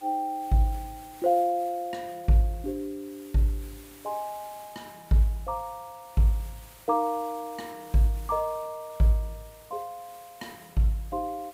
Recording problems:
background hiss; slope -2 dB per octave, SNR 22 dB

